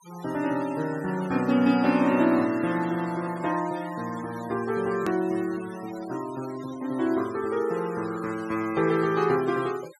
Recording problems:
denoising artefacts; signal-to-artefact ratio 18 dB
edit click; at 5 s

